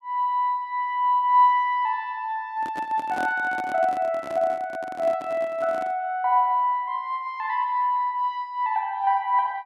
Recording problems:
microphone handling noise; from 2.5 to 6 s; peak -6 dB vs average level

